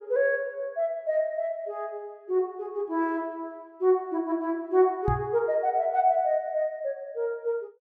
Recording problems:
knock on the microphone; at 5 s; peak +2 dB vs average level

